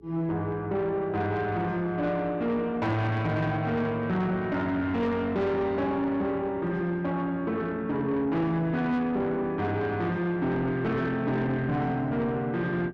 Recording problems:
distortion; soft clipping, signal-to-distortion ratio 11 dB
hum; 60 Hz, harmonics up to 420 Hz, SNR 26 dB

